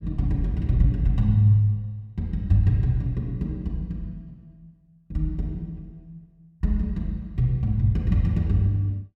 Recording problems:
none

